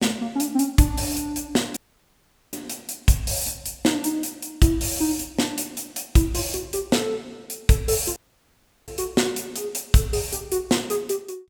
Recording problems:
audio cutting out; at 2 s for 1 s and at 8 s for 0.5 s

